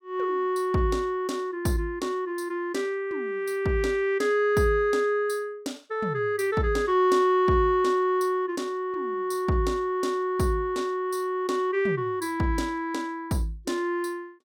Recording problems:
none

